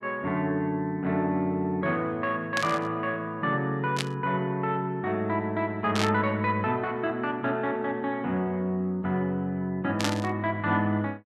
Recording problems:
burst of static; 4 times, first at 2.5 s; peak +3 dB vs average level

